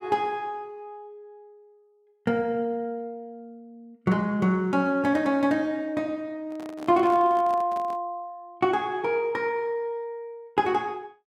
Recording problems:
handling noise; from 6.5 to 8 s; peak -11 dB vs average level

